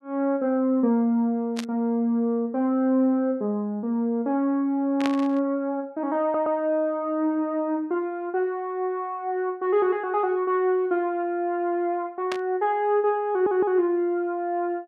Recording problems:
static burst; at 1.5 s, at 5 s and at 12 s; peak -2 dB vs average level
audio stuttering; at 6 s and at 13 s

